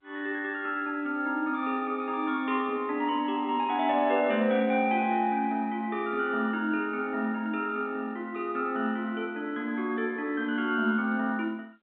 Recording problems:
telephone audio; 130 Hz to 3.5 kHz, G.711

